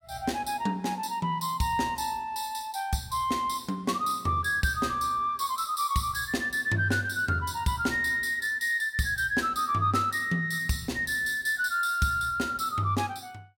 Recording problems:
none

